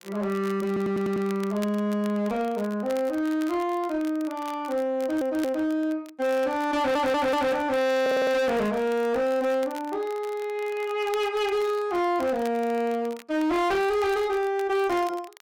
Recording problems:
distortion; hard clipping, signal-to-distortion ratio 7 dB
crackling; vinyl, SNR 22 dB
stutter; 4 times, first at 0.5 s

